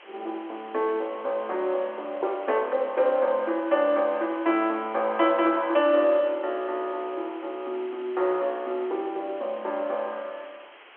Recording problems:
phone line; 300 Hz to 3.3 kHz, G.711
background hiss; SNR 22 dB

